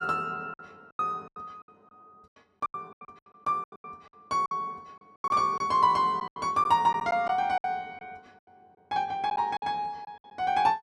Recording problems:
lost packets; 14% of the sound replaced, filled with silence

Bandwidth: 12.5 kHz